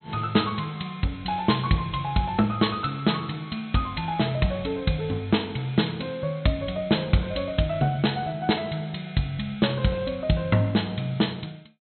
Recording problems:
treble missing; nothing above 4.2 kHz

